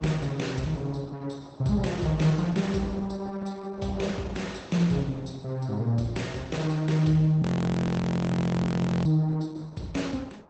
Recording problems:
lossy compression; Opus, log-spectral distance 3 dB, nothing above 8 kHz
wind on the microphone; below 900 Hz, SNR 22 dB
frozen audio; at 7.5 s for 1.5 s

